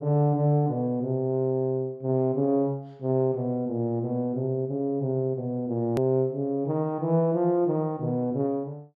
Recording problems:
hard cut with a click; at 6 s

